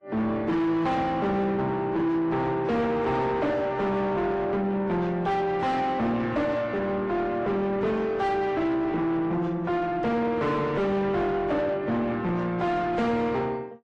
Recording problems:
lossy codec; MP3, then AAC, log-spectral distance 2 dB, nothing above 9.8 kHz
distortion; soft clipping, signal-to-distortion ratio 7 dB

